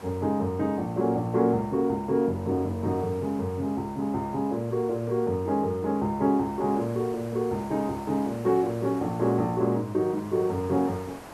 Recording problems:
hiss; SNR 20 dB

